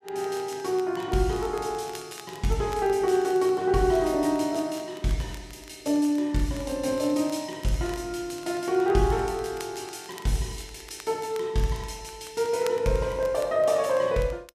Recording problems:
crackle; vinyl, SNR 23 dB

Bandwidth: 14.5 kHz